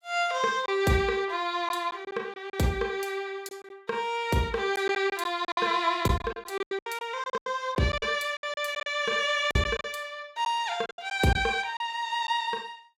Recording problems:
lost packets; 9% of the sound replaced, filled with silence

